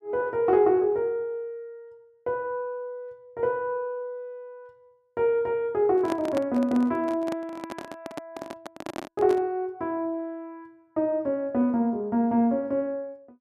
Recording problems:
microphone handling noise; from 6 to 9.5 s; peak -2 dB vs average level

